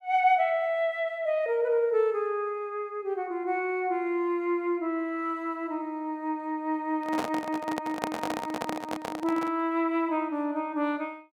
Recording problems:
microphone handling noise; from 7 to 9.5 s; peak +2 dB vs average level

